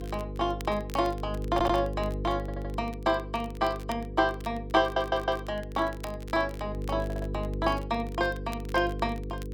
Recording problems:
electrical hum; 50 Hz, harmonics up to 500 Hz, SNR 7 dB
crackling; vinyl, SNR 22 dB
stutter; 4 times, first at 1.5 s

